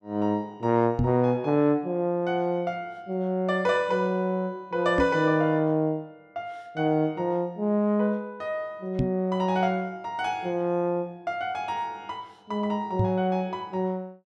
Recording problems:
microphone thump; 4 times, first at 1 s; peak +4 dB vs average level

